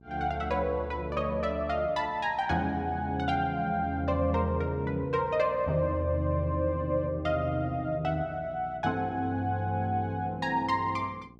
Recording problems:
hum; 60 Hz, harmonics up to 840 Hz, SNR 21 dB

